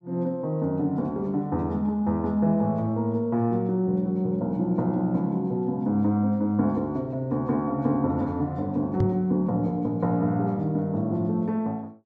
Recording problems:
microphone bump; at 9 s; peak +4 dB vs average level

